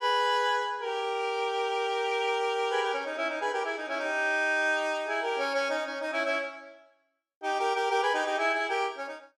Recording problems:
none

